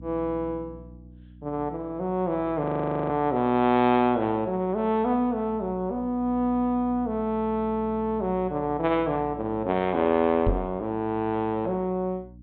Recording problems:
low-pass filter; nothing above 4 kHz
electrical hum; 60 Hz, harmonics up to 300 Hz, SNR 20 dB
audio freezing; at 2.5 s
microphone thump; at 10 s; peak +3 dB vs average level

